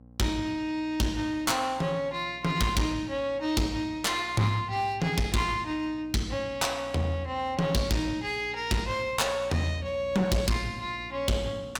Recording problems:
distortion; hard clipping, uneven, signal-to-distortion ratio 7 dB
hum; 60 Hz, harmonics up to 1 kHz, SNR 21 dB

